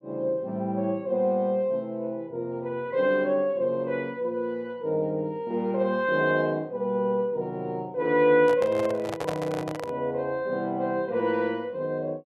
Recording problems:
microphone handling noise; from 8.5 to 10 s; peak 0 dB vs average level

